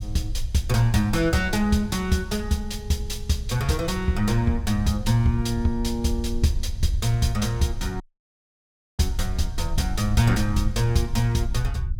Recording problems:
rumble; below 74 Hz, SNR 8 dB
audio cutting out; at 8 s for 1 s

